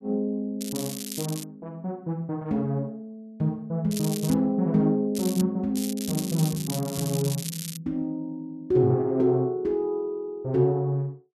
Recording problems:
crackling; 4 times, first at 0.5 s; loose cable, SNR 9 dB

